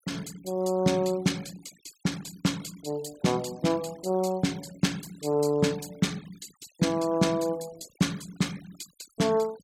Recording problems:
denoising artefacts; signal-to-artefact ratio 20 dB

